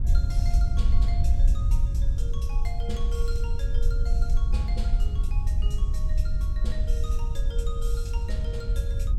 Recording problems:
wind on the microphone; below 60 Hz, SNR -14 dB

